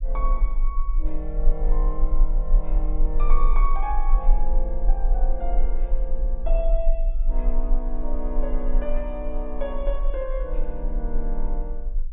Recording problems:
treble missing; nothing above 4 kHz
low-frequency rumble; below 34 Hz, strongest tone 22 Hz, SNR -7 dB

